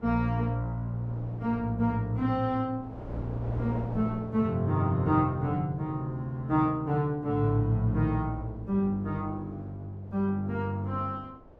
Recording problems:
wind on the microphone; below 570 Hz, SNR 17 dB

